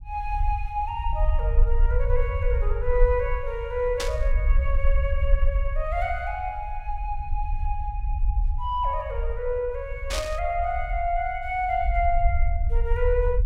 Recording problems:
rumble; below 56 Hz, SNR 0 dB
static burst; at 4 s and at 10 s; peak +3 dB vs average level

